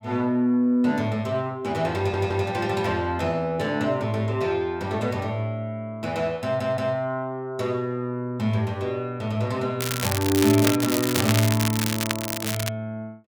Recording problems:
stutter; at 2 s and at 6.5 s
crackle; from 10 to 13 s; loose cable, SNR 3 dB

